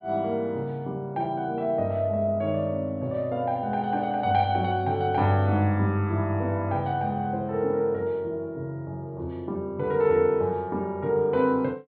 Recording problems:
low-pass filter; nothing above 4.6 kHz

